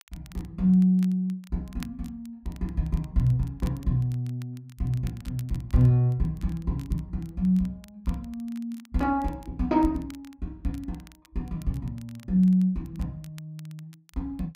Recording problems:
crackling; vinyl, SNR 28 dB

